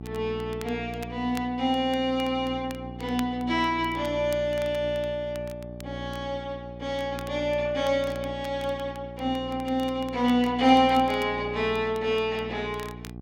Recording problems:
electrical hum; 60 Hz, harmonics up to 840 Hz, SNR 13 dB
crackling; vinyl, SNR 22 dB

